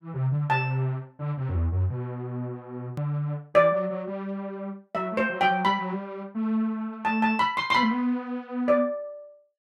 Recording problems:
click at an edit; at 3 s

